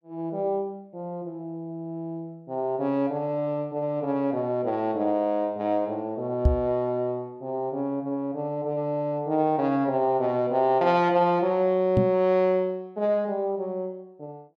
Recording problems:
knock on the microphone; at 6.5 s and at 12 s; peak +9 dB vs average level

